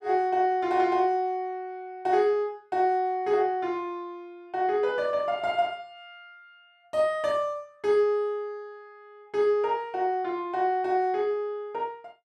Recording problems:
none

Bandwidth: 12.5 kHz